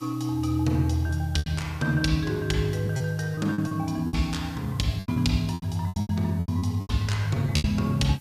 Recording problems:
hiss; slope 0 dB per octave, SNR 27 dB
lost packets; 12% of the sound replaced, filled with repeated pitch periods

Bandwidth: 14.5 kHz